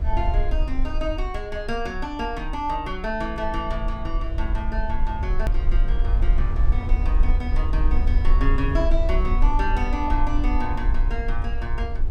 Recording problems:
low-frequency rumble; below 50 Hz, SNR -4 dB
edit click; at 5.5 s

